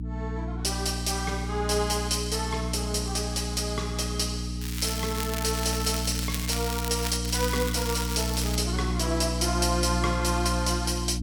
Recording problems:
hum; 60 Hz, harmonics up to 300 Hz, SNR 3 dB
crackling; from 4.5 to 7 s and from 7.5 to 8.5 s; loose cable, SNR 6 dB

